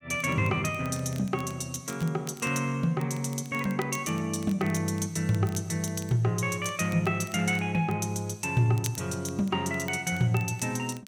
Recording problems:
crackle; vinyl, SNR 21 dB

